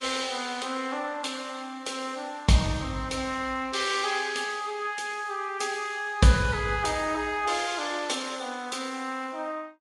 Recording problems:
lossy codec; Vorbis, then Vorbis, log-spectral distance 4 dB, nothing above 10.7 kHz

